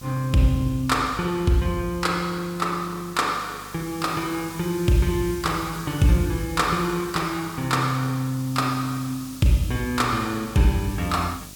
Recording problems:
hum; 50 Hz, harmonics up to 1 kHz, SNR 22 dB
hiss; SNR 17 dB

